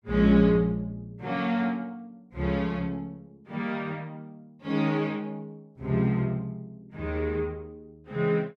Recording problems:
none

